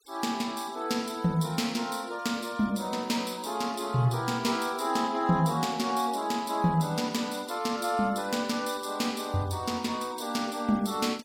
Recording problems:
noise reduction artefacts; signal-to-artefact ratio 22 dB

